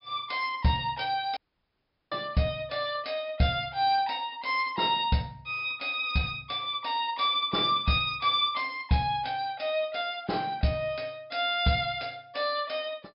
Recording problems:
low-pass filter; nothing above 5.5 kHz
audio cutting out; at 1.5 s for 0.5 s

